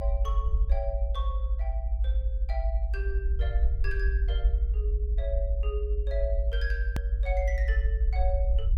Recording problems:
rumble; below 58 Hz, strongest tone 56 Hz, SNR -9 dB
click at an edit; at 7 s

